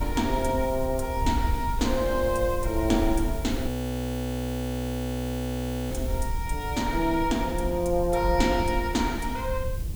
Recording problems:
electrical hum; 50 Hz, harmonics up to 500 Hz, SNR 19 dB
hiss; SNR 16 dB
wind on the microphone; below 82 Hz, SNR 6 dB
audio freezing; at 3.5 s for 2 s

